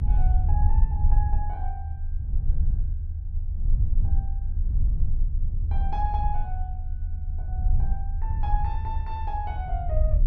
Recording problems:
low-frequency rumble; below 72 Hz, strongest tone 26 Hz, SNR -9 dB

